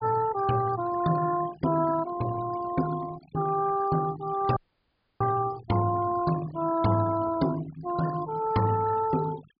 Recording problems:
treble missing; nothing above 5 kHz
denoising artefacts; signal-to-artefact ratio 16 dB
dropout; at 4.5 s for 0.5 s

